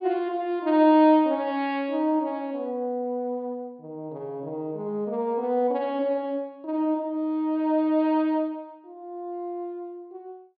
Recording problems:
treble missing; nothing above 4.9 kHz

